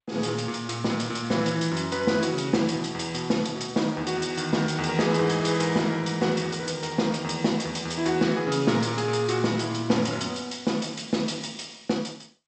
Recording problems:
lossy compression; G.722, log-spectral distance 7 dB, nothing above 8 kHz

